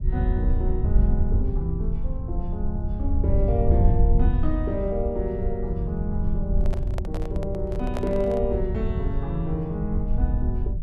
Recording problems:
low-frequency rumble; below 78 Hz, SNR -3 dB
handling noise; from 6.5 to 8.5 s; peak 0 dB vs average level

